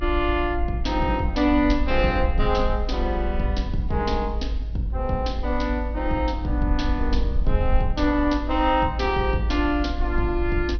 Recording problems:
treble cut off; nothing above 5.9 kHz
rumble; below 54 Hz, SNR 4 dB

